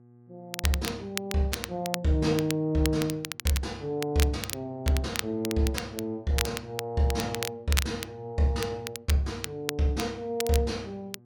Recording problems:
hum; 60 Hz, harmonics up to 840 Hz, SNR 26 dB
crackle; vinyl, SNR 7 dB

